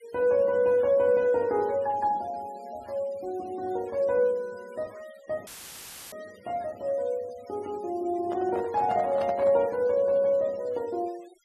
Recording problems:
denoising artefacts; signal-to-artefact ratio 26 dB
dropout; at 5.5 s for 0.5 s; filled with static
microphone handling noise; from 8 to 9.5 s; peak -8 dB vs average level

